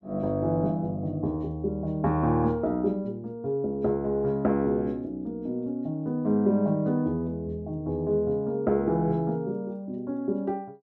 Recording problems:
none

